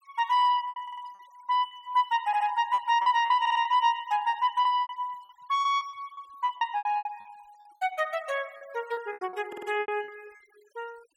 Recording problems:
noise reduction artefacts; signal-to-artefact ratio 26 dB
lost packets; 14% of the sound replaced, filled with repeated pitch periods
stutter; 4 times, first at 1 s

